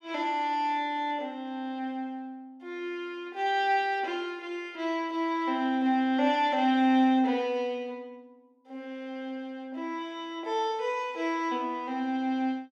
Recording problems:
none

